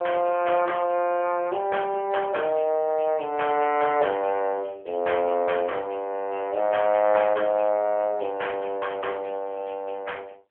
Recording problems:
telephone audio; 340 Hz to 3.3 kHz, AMR-NB

